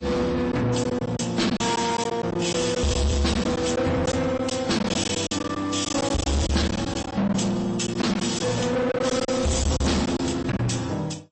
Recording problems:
lossy codec; MP3, then AAC, log-spectral distance 6 dB, nothing above 8.2 kHz
distorted audio; soft clipping, signal-to-distortion ratio 6 dB
packet loss; 8% of the sound replaced, filled with silence

